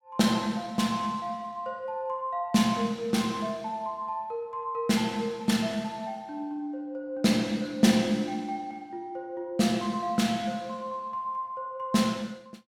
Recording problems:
none

